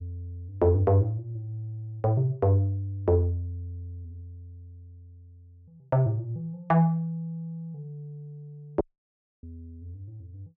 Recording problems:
dropout; at 9 s for 0.5 s

